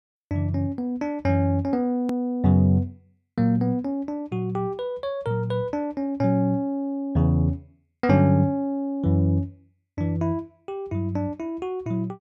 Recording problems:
click at an edit; at 2 s

